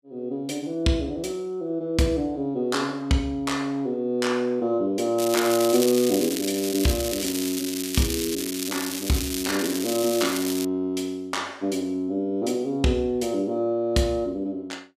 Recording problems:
crackling; from 5 to 11 s; loose cable, SNR 5 dB

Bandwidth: 14.5 kHz